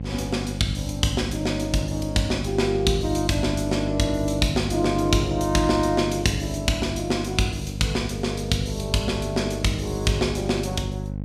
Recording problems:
hum; 50 Hz, harmonics up to 550 Hz, SNR 6 dB

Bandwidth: 15 kHz